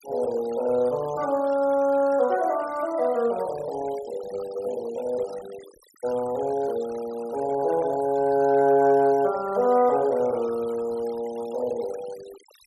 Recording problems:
denoising artefacts; signal-to-artefact ratio 22 dB

